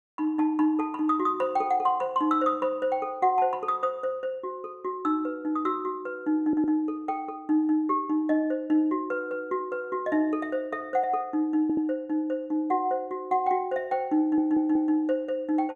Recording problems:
stutter; at 6.5 s, at 12 s and at 14 s

